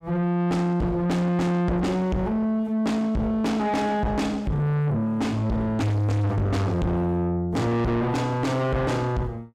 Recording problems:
distortion; soft clipping, signal-to-distortion ratio 6 dB

